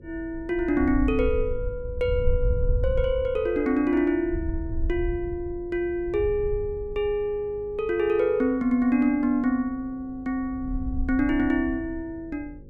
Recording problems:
electrical hum; 50 Hz, harmonics up to 550 Hz, SNR 22 dB
wind noise; below 72 Hz, SNR 7 dB

